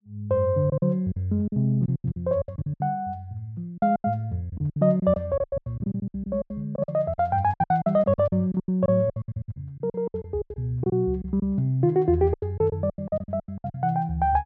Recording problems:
packet loss; 19% of the sound replaced, filled with silence

